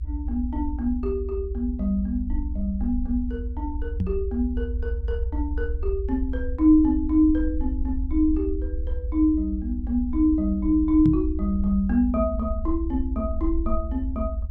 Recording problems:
rumble; below 72 Hz, SNR 6 dB
knock on the microphone; at 4 s and at 11 s; peak +4 dB vs average level

